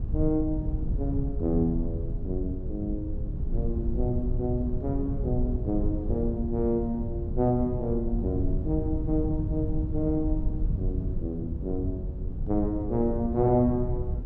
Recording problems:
rumble; below 100 Hz, SNR 3 dB

